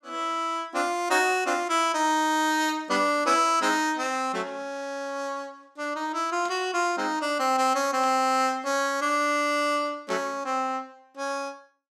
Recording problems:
burst of static; 4 times, first at 4 s; peak -13 dB vs average level

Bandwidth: 14.5 kHz